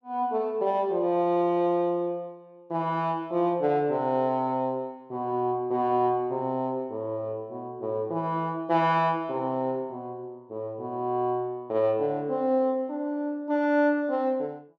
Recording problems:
none

